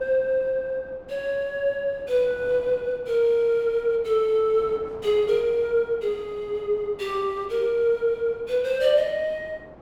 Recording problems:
wind on the microphone; below 750 Hz, SNR 22 dB

